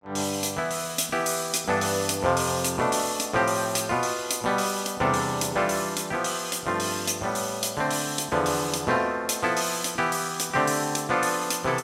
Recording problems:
none

